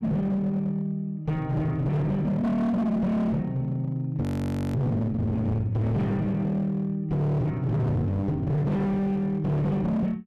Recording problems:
distorted audio; hard clipping, signal-to-distortion ratio 8 dB
audio freezing; at 4 s for 0.5 s

